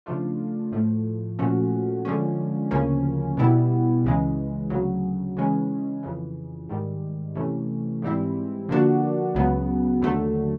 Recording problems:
none

